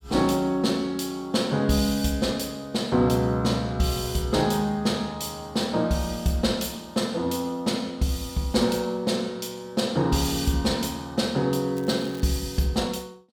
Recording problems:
crackle; at 12 s; loose cable, SNR 23 dB

